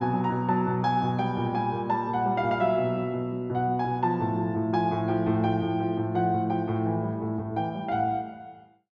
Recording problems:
none

